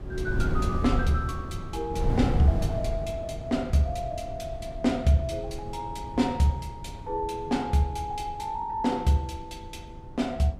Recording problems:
wind noise; below 150 Hz, SNR 5 dB

